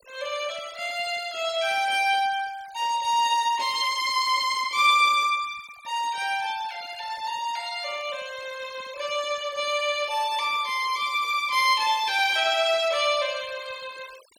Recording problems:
noise reduction artefacts; signal-to-artefact ratio 21 dB

